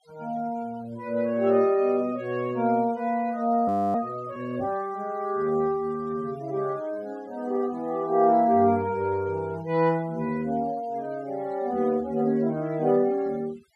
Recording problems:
denoising artefacts; signal-to-artefact ratio 26 dB
frozen audio; at 3.5 s

